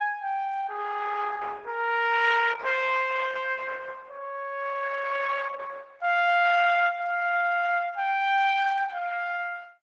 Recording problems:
codec artefacts; Opus, log-spectral distance 4 dB, nothing above 7.6 kHz

